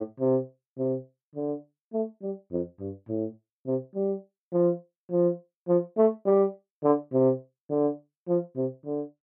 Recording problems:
none

